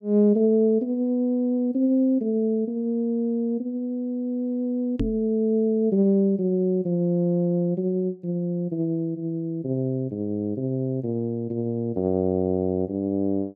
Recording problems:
microphone thump; at 5 s; peak +1 dB vs average level

